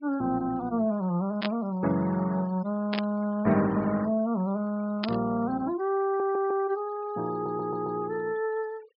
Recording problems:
treble missing; nothing above 5.5 kHz
noise reduction artefacts; signal-to-artefact ratio 22 dB
burst of static; at 1.5 s, at 3 s and at 5 s; peak 0 dB vs average level
stutter; at 6 s and at 7.5 s

